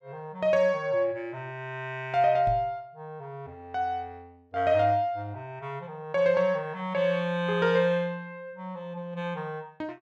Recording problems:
microphone bump; at 2.5 s; peak -3 dB vs average level

